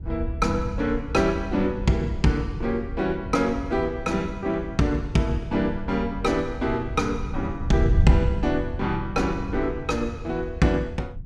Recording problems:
wind noise; below 92 Hz, SNR 6 dB

